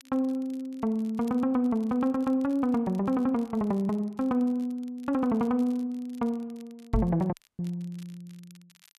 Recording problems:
crackling; vinyl, SNR 30 dB
knock on the microphone; at 7 s; peak +5 dB vs average level
audio cutting out; at 7.5 s

